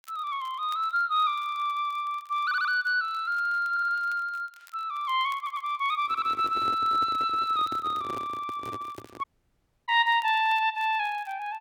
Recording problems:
crackle; vinyl, SNR 30 dB
stutter; 4 times, first at 2.5 s
handling noise; from 6 to 9 s; peak -8 dB vs average level
dropout; at 9 s for 0.5 s

